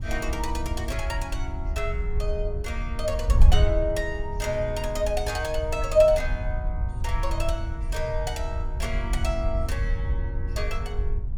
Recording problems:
wind on the microphone; below 70 Hz, SNR 1 dB

